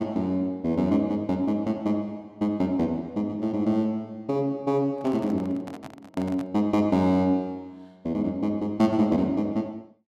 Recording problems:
microphone handling noise; from 5 to 6.5 s; peak -9 dB vs average level

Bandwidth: 14 kHz